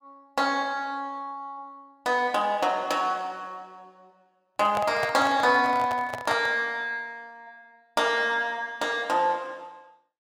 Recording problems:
handling noise; from 4.5 to 6.5 s; peak 0 dB vs average level

